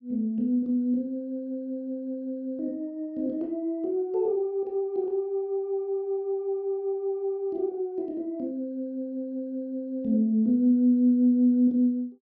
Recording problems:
none

